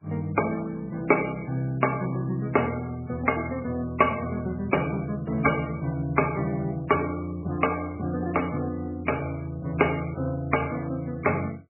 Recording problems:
codec artefacts; MP3, log-spectral distance 4 dB

